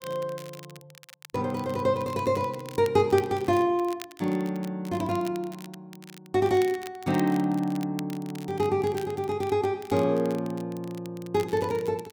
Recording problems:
crackle; vinyl, SNR 20 dB

